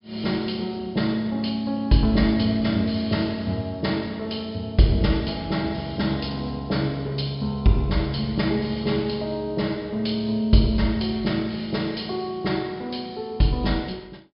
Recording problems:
treble missing; nothing above 5.5 kHz

